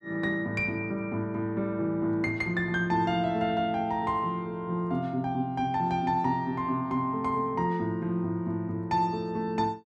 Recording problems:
none

